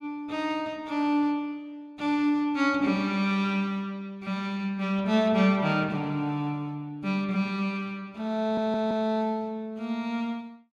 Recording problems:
audio stuttering; at 8.5 s

